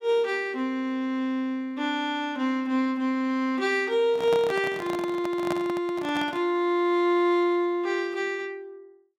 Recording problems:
handling noise; from 4 to 6.5 s; peak -1 dB vs average level

